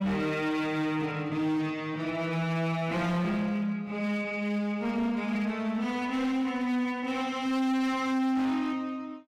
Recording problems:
distortion; hard clipping, signal-to-distortion ratio 10 dB

